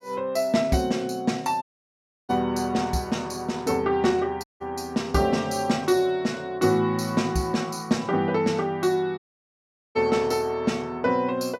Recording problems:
audio cutting out; at 1.5 s for 0.5 s, at 4.5 s and at 9 s for 1 s

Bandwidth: 16.5 kHz